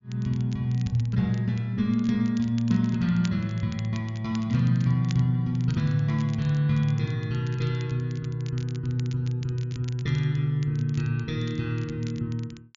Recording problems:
treble cut off; nothing above 7.1 kHz
crackle; vinyl, SNR 23 dB

